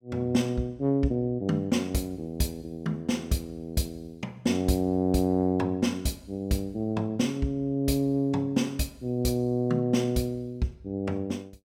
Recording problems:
none

